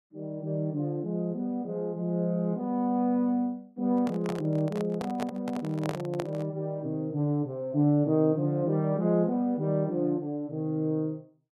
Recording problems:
microphone handling noise; from 4 to 6.5 s; peak -1 dB vs average level

